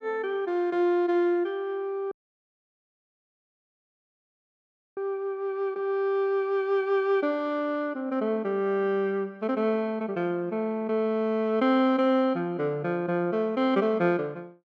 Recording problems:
audio cutting out; at 2 s for 3 s

